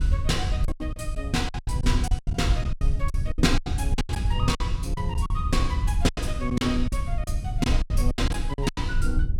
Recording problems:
low-frequency rumble; below 82 Hz, SNR -1 dB
packet loss; 16% of the sound replaced, filled with silence

